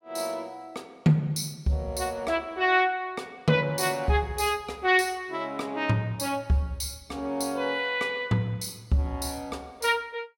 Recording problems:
none

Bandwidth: 17 kHz